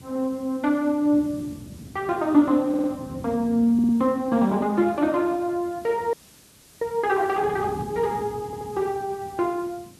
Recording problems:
lossy compression; MP3, then Speex, log-spectral distance 2 dB
hiss; SNR 26 dB
wind on the microphone; below 280 Hz, SNR 17 dB
stutter; at 2.5 s, at 3.5 s and at 8.5 s
audio freezing; at 6 s for 0.5 s

